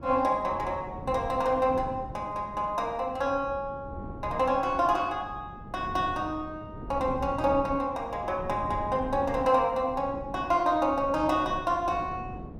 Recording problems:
wind on the microphone; below 290 Hz, SNR 14 dB

